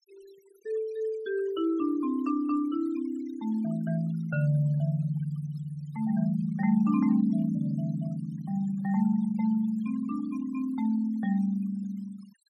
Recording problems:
denoising artefacts; signal-to-artefact ratio 24 dB

